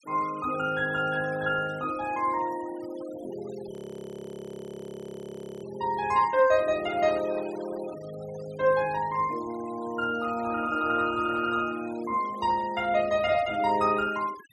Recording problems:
denoising artefacts; signal-to-artefact ratio 20 dB
frozen audio; at 3.5 s for 2 s

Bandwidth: 12.5 kHz